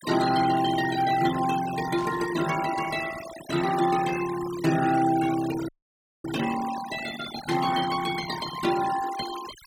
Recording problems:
denoising artefacts; signal-to-artefact ratio 12 dB
static burst; at 2 s, at 4 s and at 7.5 s; peak -15 dB vs average level
audio cutting out; at 5.5 s for 0.5 s

